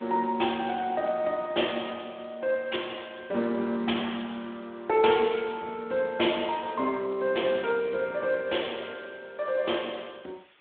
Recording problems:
phone line; 190 Hz to 3.5 kHz, Speex
background hiss; SNR 30 dB

